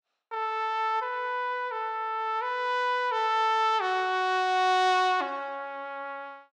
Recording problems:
none

